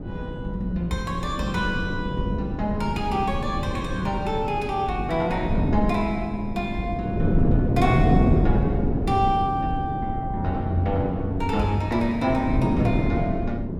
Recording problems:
wind on the microphone; below 270 Hz, SNR 1 dB

